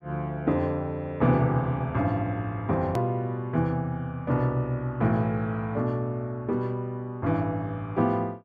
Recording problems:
click at an edit; at 3 s

